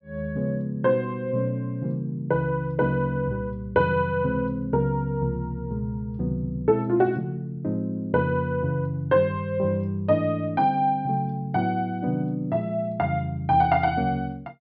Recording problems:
treble missing; nothing above 5.5 kHz

